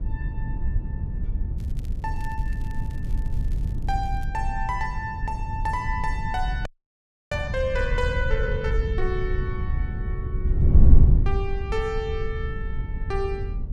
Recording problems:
wind on the microphone; below 78 Hz, SNR -4 dB
crackling; from 1.5 to 4.5 s; loose cable, SNR 25 dB
frozen audio; at 6.5 s for 0.5 s

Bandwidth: 14 kHz